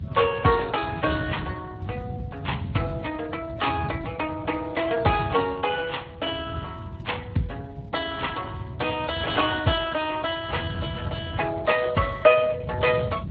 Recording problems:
lossy codec; AAC, then Speex, log-spectral distance 4 dB
rumble; below 170 Hz, SNR 10 dB

